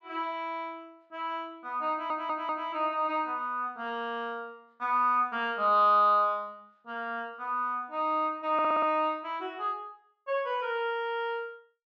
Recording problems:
audio stuttering; at 2 s and at 8.5 s

